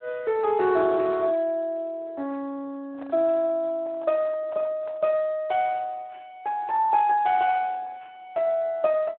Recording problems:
telephone audio; 130 Hz to 3.4 kHz, Speex
handling noise; from 3 to 5 s; peak -14 dB vs average level

